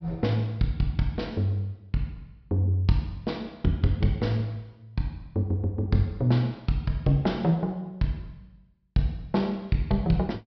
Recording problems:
treble missing; nothing above 5.5 kHz

